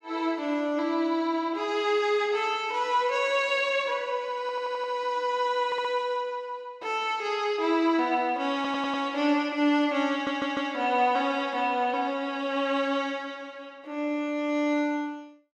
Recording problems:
stutter; 4 times, first at 4.5 s

